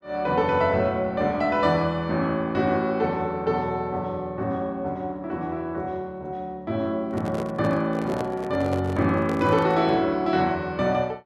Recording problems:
microphone handling noise; from 7 to 10 s; peak -3 dB vs average level

